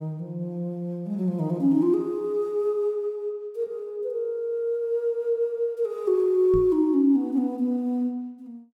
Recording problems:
knock on the microphone; at 6.5 s; peak -3 dB vs average level

